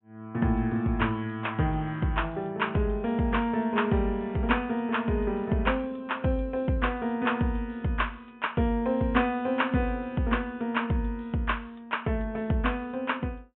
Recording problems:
low-pass filter; nothing above 3.5 kHz

